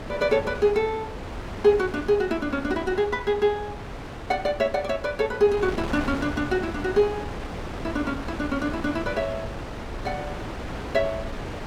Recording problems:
wind on the microphone; below 940 Hz, SNR 9 dB

